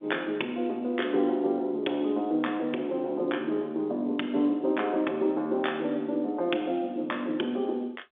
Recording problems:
telephone audio; 260 Hz to 3.6 kHz, G.711

